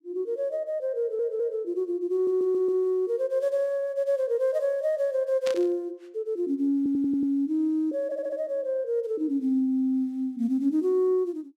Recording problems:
stutter; 4 times, first at 1 s
static burst; at 5.5 s; peak -5 dB vs average level

